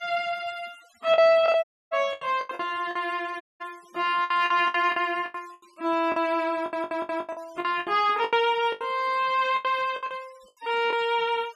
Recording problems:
noise reduction artefacts; signal-to-artefact ratio 25 dB
lost packets; 13% of the sound replaced, filled with the last packet
dropout; at 1.5 s and at 3.5 s
audio stuttering; at 6.5 s

